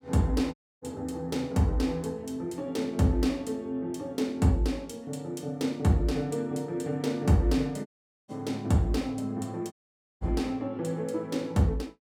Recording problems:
audio cutting out; at 0.5 s, at 8 s and at 9.5 s

